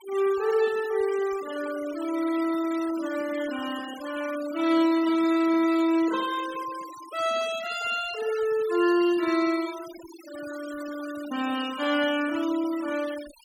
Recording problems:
noise reduction artefacts; signal-to-artefact ratio 16 dB

